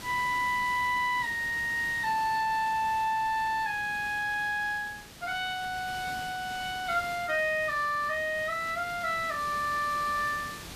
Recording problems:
background hiss; slope -2 dB per octave, SNR 15 dB

